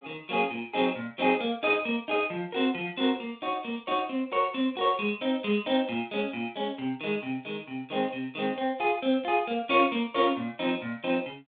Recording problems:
telephone audio; 280 Hz to 3.6 kHz, G.726

